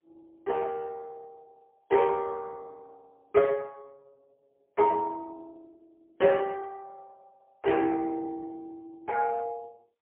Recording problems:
telephone audio; 280 Hz to 3.3 kHz, AMR-NB, then MP3

